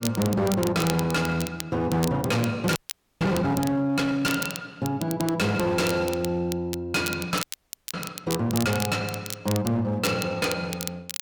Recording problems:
distortion; hard clipping, signal-to-distortion ratio 7 dB
crackling; vinyl, SNR 10 dB
audio freezing; at 3 s and at 7.5 s for 0.5 s

